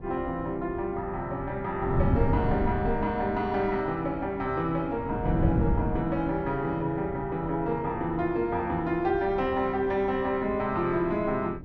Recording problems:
wind on the microphone; below 190 Hz, SNR 7 dB

